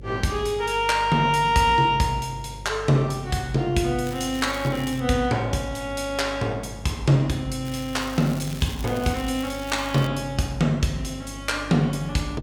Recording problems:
hum; 50 Hz, harmonics up to 550 Hz, SNR 17 dB
crackling; at 4 s and from 7.5 to 10 s; loose cable, SNR 17 dB

